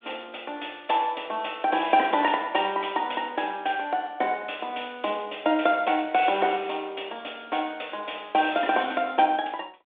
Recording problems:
phone line; 220 Hz to 3.6 kHz, G.726

